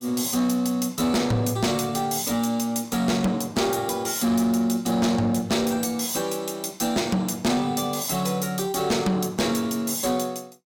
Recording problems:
distorted audio; soft clipping, signal-to-distortion ratio 11 dB

